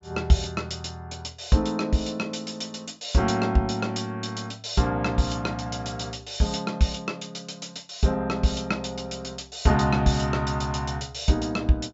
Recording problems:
treble missing; nothing above 8 kHz

